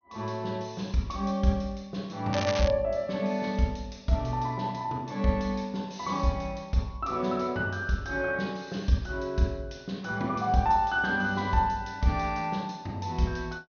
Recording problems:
treble missing; nothing above 6.4 kHz
crackle; at 2.5 s; loose cable, SNR 7 dB

